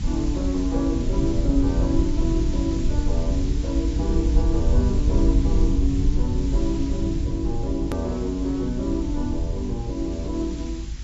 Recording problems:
lossy codec; AAC, log-spectral distance 3 dB, nothing above 13.1 kHz
hum; 50 Hz, harmonics up to 700 Hz, SNR 23 dB
hiss; slope +2 dB per octave, SNR 16 dB
rumble; below 74 Hz, SNR -1 dB
click at an edit; at 8 s

